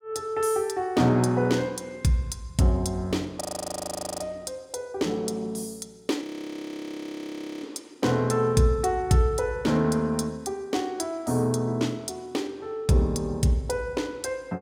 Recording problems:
audio freezing; at 3.5 s for 1 s and at 6 s for 1.5 s

